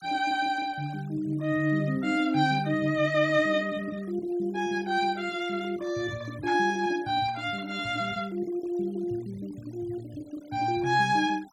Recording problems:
noise reduction artefacts; signal-to-artefact ratio 25 dB

